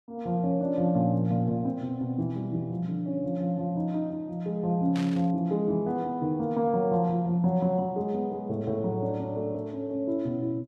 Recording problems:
static burst; at 5 s; peak -8 dB vs average level

